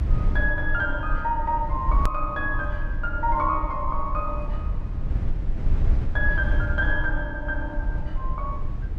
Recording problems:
rumble; below 68 Hz, SNR 1 dB
click at an edit; at 2 s

